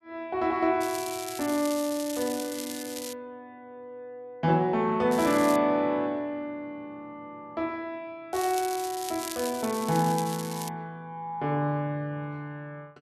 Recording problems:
crackle; from 1 to 3 s, at 5 s and from 8.5 to 11 s; loose cable, SNR 10 dB

